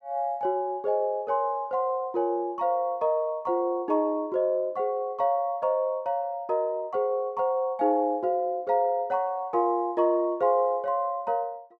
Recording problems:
none

